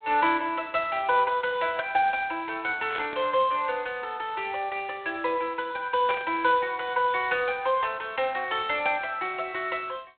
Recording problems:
telephone audio; 300 Hz to 3.5 kHz, G.726
burst of static; at 3 s and at 6 s; peak -4 dB vs average level

